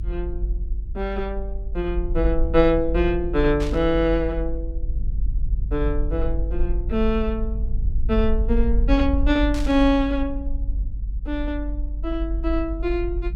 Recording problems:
rumble; below 50 Hz, SNR 4 dB
burst of static; at 3.5 s and at 9.5 s; peak -8 dB vs average level

